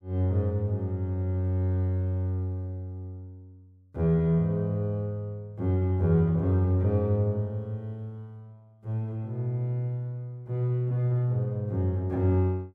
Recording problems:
none

